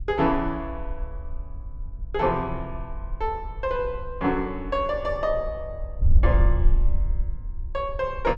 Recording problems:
wind on the microphone; below 58 Hz, SNR 3 dB

